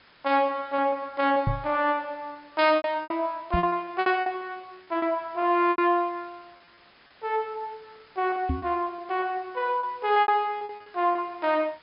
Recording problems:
low-pass filter; nothing above 5.5 kHz
hiss; SNR 28 dB
packet loss; 11% of the sound replaced, filled with repeated pitch periods
microphone thump; at 1.5 s, at 3.5 s and at 8.5 s; peak +3 dB vs average level

